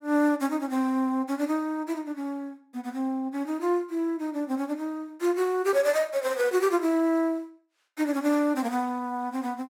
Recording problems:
none

